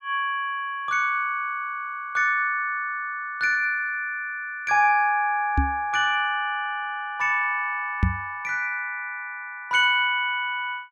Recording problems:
microphone bump; at 5.5 s and at 8 s; peak +6 dB vs average level

